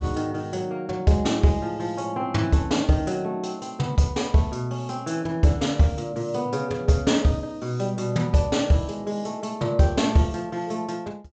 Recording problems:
treble cut off; nothing above 8 kHz

